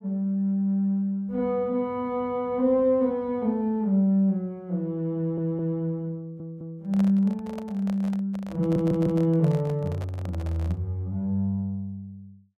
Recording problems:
stutter; at 5 s, at 6 s and at 8.5 s
handling noise; from 6.5 to 11 s; peak -8 dB vs average level

